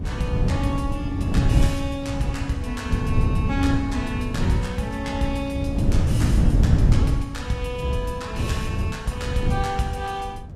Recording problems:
lossy compression; Vorbis, log-spectral distance 2 dB, nothing above 13.8 kHz
wind noise; below 160 Hz, SNR -4 dB

